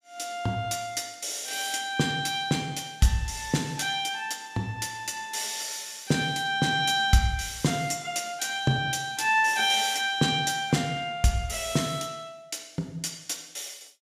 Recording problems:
none

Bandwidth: 15 kHz